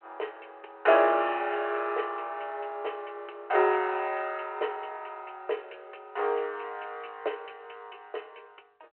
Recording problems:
phone line; 340 Hz to 3.2 kHz, G.726

